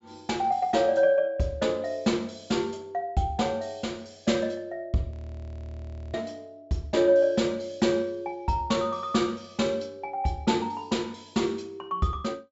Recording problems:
treble cut off; nothing above 8 kHz
frozen audio; at 5 s for 1 s

